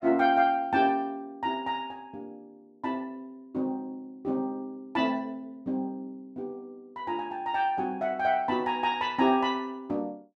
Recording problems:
none

